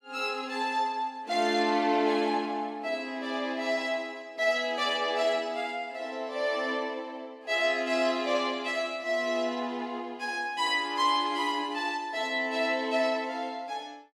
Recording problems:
none

